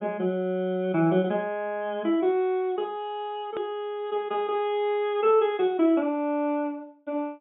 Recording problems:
low-pass filter; nothing above 3.7 kHz
click at an edit; at 3.5 s

